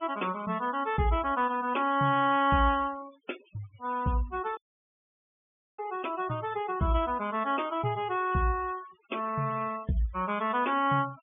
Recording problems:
low-pass filter; nothing above 3.5 kHz
noise reduction artefacts; signal-to-artefact ratio 20 dB
audio cutting out; at 4.5 s for 1 s

